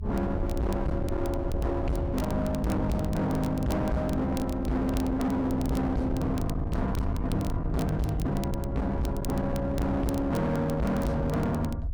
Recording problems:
distorted audio; hard clipping, uneven, signal-to-distortion ratio 6 dB
rumble; below 100 Hz, SNR 6 dB
crackle; vinyl, SNR 20 dB

